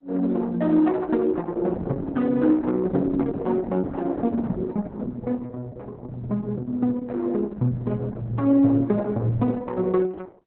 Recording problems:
lossy compression; Opus, then Opus, log-spectral distance 3 dB, nothing above 4 kHz

